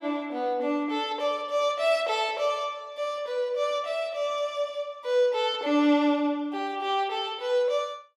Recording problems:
none

